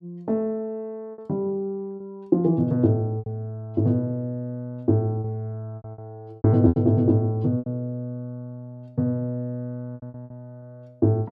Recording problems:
packet loss; 7% of the sound replaced, filled with repeated pitch periods

